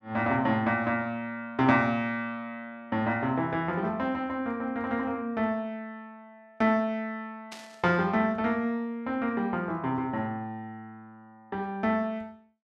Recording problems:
burst of static; at 7.5 s; peak -9 dB vs average level

